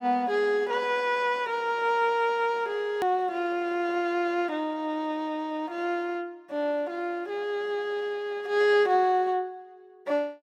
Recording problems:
click at an edit; at 3 s

